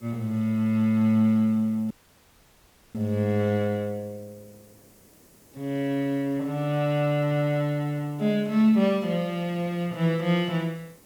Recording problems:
hiss; SNR 29 dB
audio cutting out; at 2 s for 1 s

